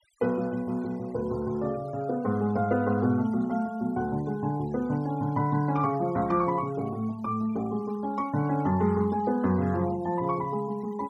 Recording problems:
noise reduction artefacts; signal-to-artefact ratio 24 dB

